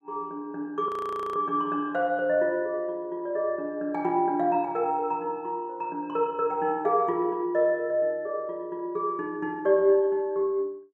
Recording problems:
frozen audio; at 1 s

